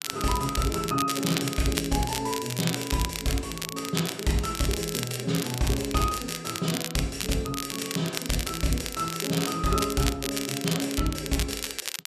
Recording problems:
crackling; vinyl, SNR 4 dB

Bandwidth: 14 kHz